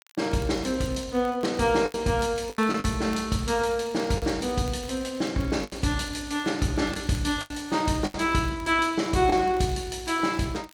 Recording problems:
crackling; vinyl, SNR 25 dB
packet loss; 5% of the sound replaced, filled with the last packet

